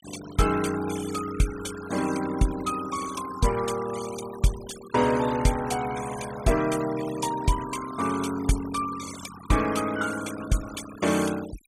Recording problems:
noise reduction artefacts; signal-to-artefact ratio 13 dB

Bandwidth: 15.5 kHz